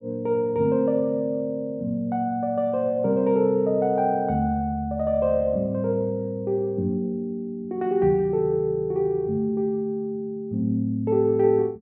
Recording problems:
none

